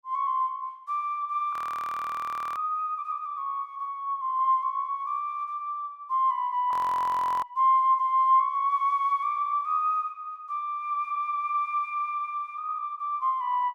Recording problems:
audio freezing; at 1.5 s for 1 s and at 6.5 s for 0.5 s

